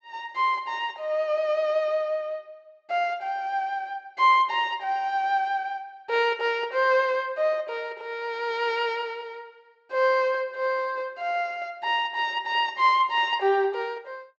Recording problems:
treble cut off; nothing above 8 kHz

